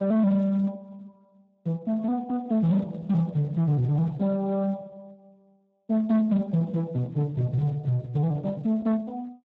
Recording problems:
lossy compression; Speex, log-spectral distance 2 dB
distortion; soft clipping, signal-to-distortion ratio 11 dB

